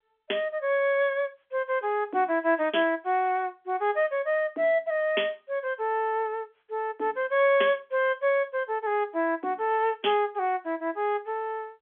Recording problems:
telephone audio; 240 Hz to 3.5 kHz, G.711

